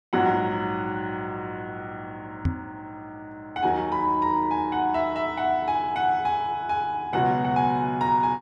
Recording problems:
microphone bump; at 2.5 s; peak +4 dB vs average level

